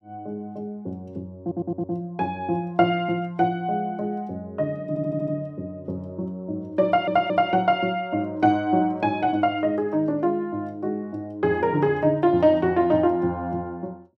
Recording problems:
stutter; at 1.5 s, at 5 s and at 7 s

